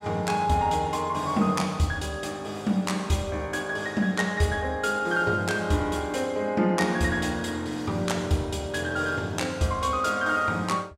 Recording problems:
none

